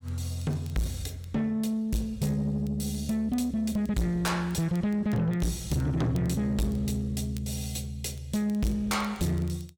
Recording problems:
distortion; soft clipping, signal-to-distortion ratio 7 dB
crackle; vinyl, SNR 27 dB

